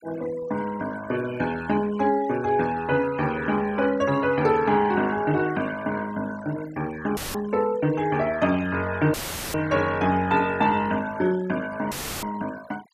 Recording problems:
denoising artefacts; signal-to-artefact ratio 18 dB
dropout; at 7 s, at 9 s and at 12 s; filled with static

